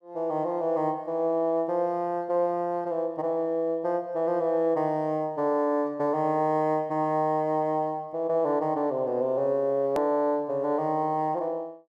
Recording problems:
hard cut with a click; at 10 s

